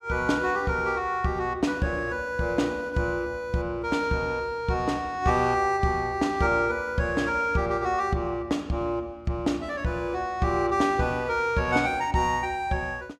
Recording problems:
none

